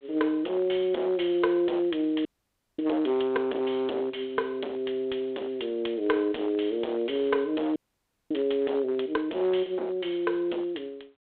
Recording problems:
telephone audio; 320 Hz to 3.5 kHz, G.726
distorted audio; hard clipping, signal-to-distortion ratio 9 dB
frozen audio; at 2.5 s for 0.5 s and at 8 s for 0.5 s

